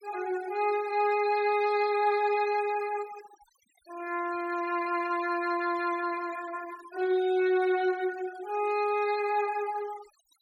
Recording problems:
noise reduction artefacts; signal-to-artefact ratio 19 dB

